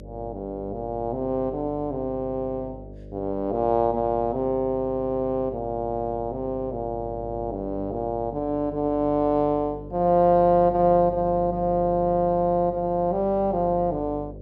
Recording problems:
hum; 50 Hz, harmonics up to 600 Hz, SNR 16 dB

